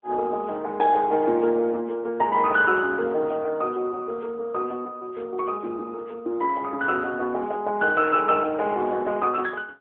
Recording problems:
telephone audio; 280 Hz to 3 kHz, AMR-NB

